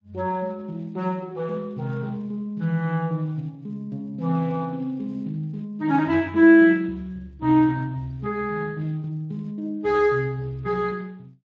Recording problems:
codec artefacts; Speex, log-spectral distance 2 dB

